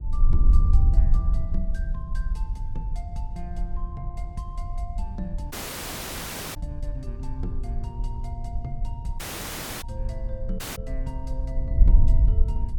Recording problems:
wind on the microphone; below 56 Hz, SNR -11 dB
audio cutting out; at 5.5 s for 1 s, at 9 s for 0.5 s and at 11 s

